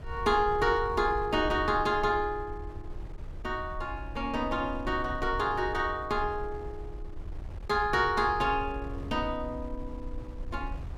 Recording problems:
wind noise; below 76 Hz, SNR 12 dB

